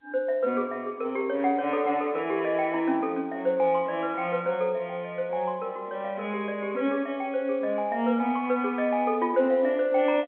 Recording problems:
phone line; 220 Hz to 3.5 kHz, G.711

